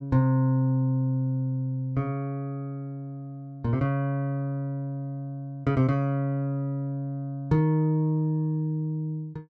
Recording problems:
none

